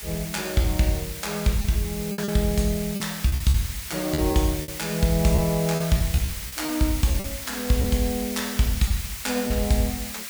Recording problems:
hiss; SNR 8 dB
wind noise; below 2.3 kHz, SNR 29 dB
packet loss; 7% of the sound replaced, filled with repeated pitch periods

